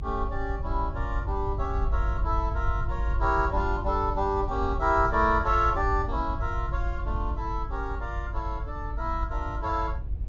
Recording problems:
treble missing; nothing above 7.3 kHz
low-frequency rumble; below 72 Hz, strongest tone 48 Hz, SNR 3 dB

